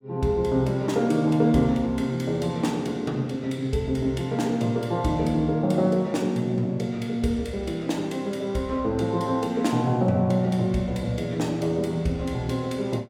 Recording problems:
none

